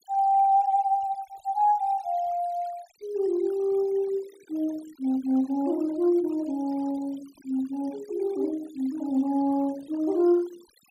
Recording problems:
noise reduction artefacts; signal-to-artefact ratio 24 dB

